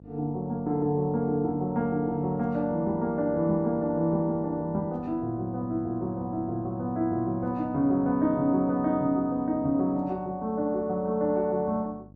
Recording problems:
electrical hum; 50 Hz, harmonics up to 600 Hz, SNR 22 dB

